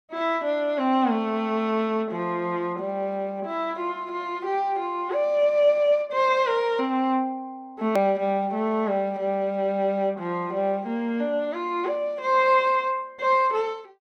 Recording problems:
edit click; at 8 s

